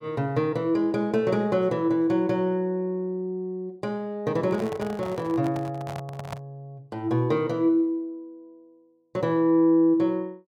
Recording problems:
handling noise; from 4.5 to 6.5 s; peak -6 dB vs average level

